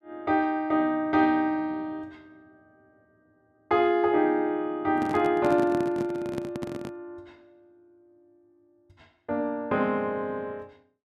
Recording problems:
handling noise; from 5 to 7 s; peak -2 dB vs average level

